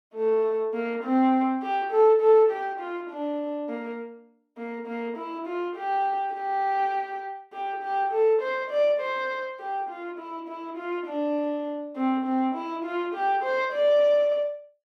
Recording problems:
none

